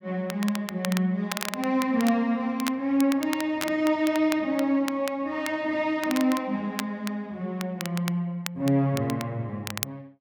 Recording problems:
crackle; vinyl, SNR 11 dB

